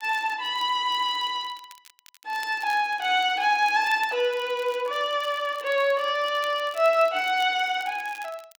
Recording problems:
crackle; vinyl, SNR 24 dB

